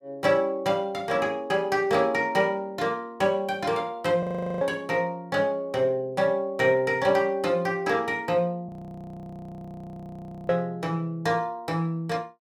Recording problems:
frozen audio; at 4 s and at 8.5 s for 2 s

